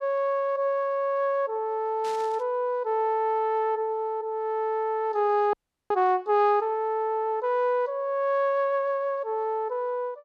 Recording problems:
static burst; at 2 s; peak -13 dB vs average level
frozen audio; at 5.5 s

